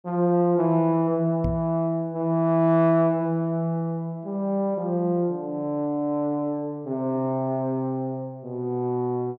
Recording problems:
knock on the microphone; at 1.5 s; peak -1 dB vs average level

